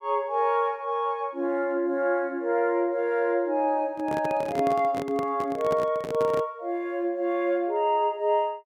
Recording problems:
microphone handling noise; from 4 to 6.5 s; peak -3 dB vs average level

